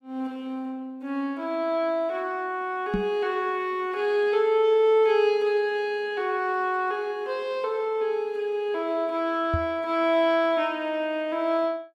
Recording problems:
microphone thump; at 3 s and at 9.5 s; peak +2 dB vs average level

